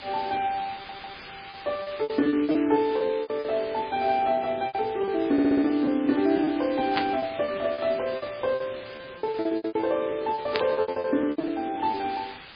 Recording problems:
lossy codec; MP3, log-spectral distance 10 dB, nothing above 4 kHz
hiss; SNR 16 dB
packet loss; 18% of the sound replaced, filled with repeated pitch periods
audio stuttering; at 0.5 s and at 5.5 s
burst of static; at 7 s and at 11 s; peak +3 dB vs average level

